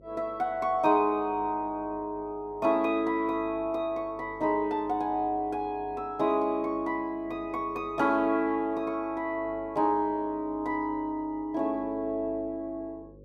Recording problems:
hum; 50 Hz, harmonics up to 550 Hz, SNR 23 dB

